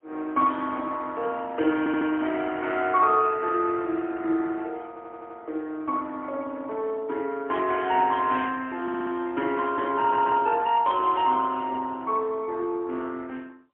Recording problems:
phone line; 240 Hz to 3.4 kHz, AMR-NB, then MP3
audio stuttering; 4 times, first at 2 s

